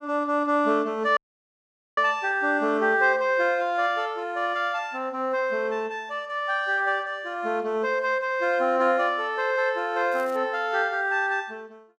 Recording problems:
audio cutting out; at 1 s for 1 s
crackling; at 10 s; loose cable, SNR 28 dB

